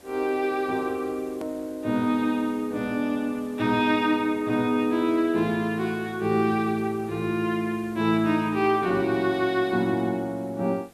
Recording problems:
hiss; slope -4 dB per octave, SNR 26 dB
click at an edit; at 1.5 s

